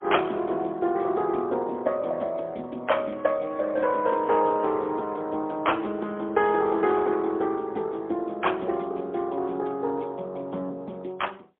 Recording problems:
phone line; 240 Hz to 3.3 kHz, AMR-NB, then MP3

